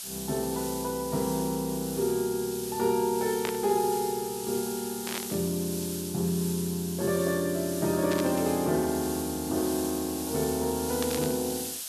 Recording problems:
hiss; SNR 7 dB
static burst; 4 times, first at 3.5 s; peak -1 dB vs average level

